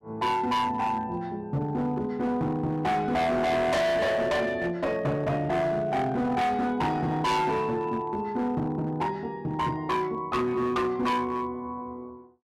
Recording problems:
distorted audio; hard clipping, signal-to-distortion ratio 6 dB

